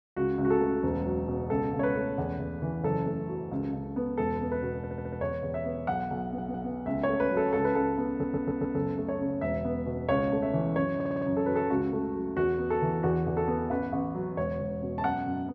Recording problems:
audio stuttering; 4 times, first at 5 s

